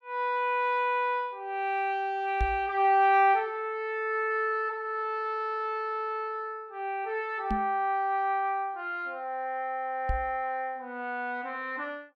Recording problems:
microphone bump; at 2.5 s, at 7.5 s and at 10 s; peak +1 dB vs average level

